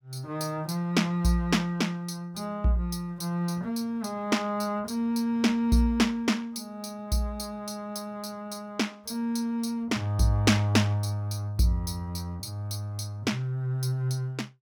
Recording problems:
none

